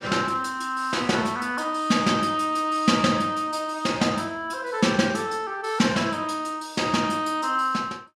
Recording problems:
none

